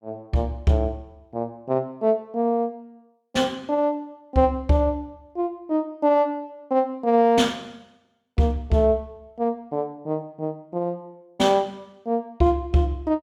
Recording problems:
none

